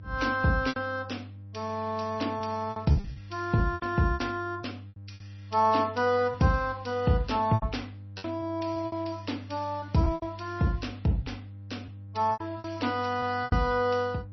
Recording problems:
codec artefacts; MP3, log-spectral distance 3 dB, nothing above 5.8 kHz
electrical hum; 50 Hz, harmonics up to 500 Hz, SNR 15 dB
packet loss; 9% of the sound replaced, filled with repeated pitch periods

